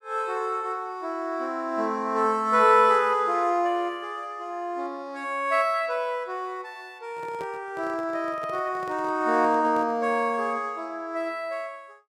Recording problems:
microphone handling noise; from 7 to 10 s; peak -11 dB vs average level

